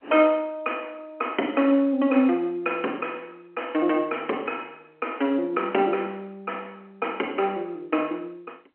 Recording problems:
telephone audio; 240 Hz to 3.2 kHz, G.711

